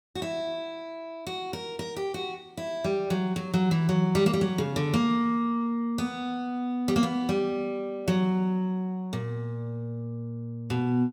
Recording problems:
none

